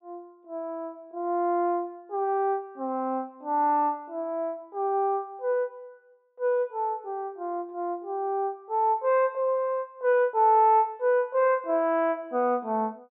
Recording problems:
treble missing; nothing above 4 kHz

